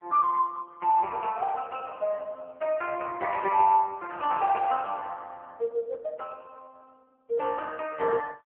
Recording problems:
phone line; 390 Hz to 2.6 kHz, AMR-NB

